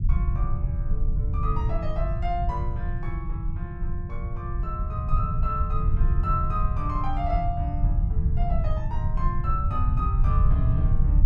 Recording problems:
rumble; below 92 Hz, SNR -6 dB

